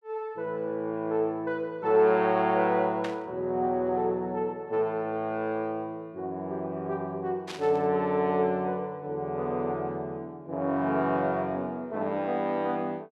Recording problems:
static burst; at 3 s and at 7.5 s; peak -5 dB vs average level

